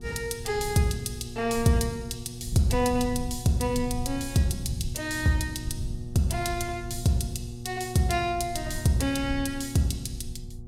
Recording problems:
electrical hum; 60 Hz, harmonics up to 720 Hz, SNR 14 dB
rumble; below 110 Hz, SNR 12 dB

